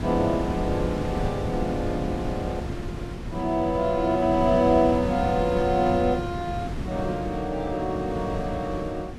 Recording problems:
wind on the microphone; below 300 Hz, SNR 7 dB

